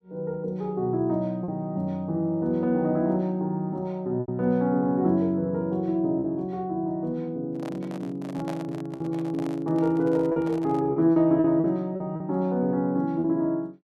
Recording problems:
lost packets; 4% of the sound replaced, filled with repeated pitch periods
handling noise; from 7.5 to 11 s; peak -8 dB vs average level

